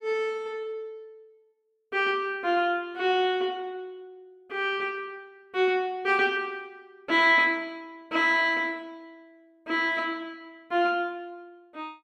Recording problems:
none

